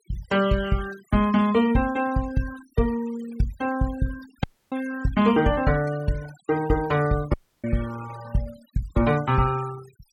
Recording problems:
denoising artefacts; signal-to-artefact ratio 17 dB
audio cutting out; at 4.5 s and at 7.5 s

